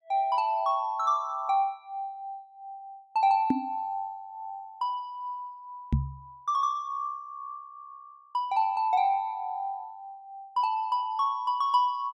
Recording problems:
knock on the microphone; at 3.5 s and at 6 s; peak +7 dB vs average level

